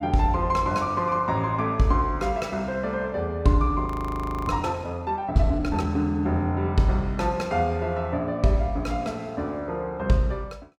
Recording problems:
audio freezing; at 4 s for 0.5 s

